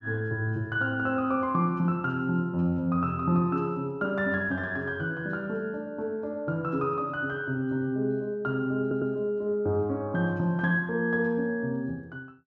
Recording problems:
audio stuttering; at 9 s

